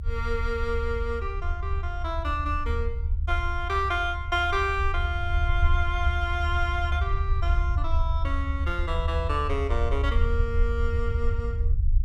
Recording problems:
low-frequency rumble; below 76 Hz, SNR -1 dB

